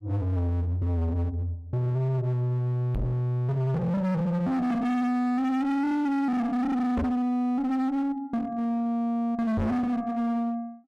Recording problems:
distortion; hard clipping, uneven, signal-to-distortion ratio 6 dB
microphone thump; at 3 s, at 7 s and at 9.5 s; peak +5 dB vs average level

